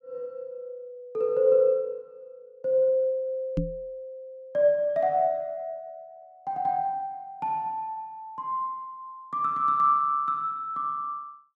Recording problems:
knock on the microphone; at 3.5 s; peak +3 dB vs average level

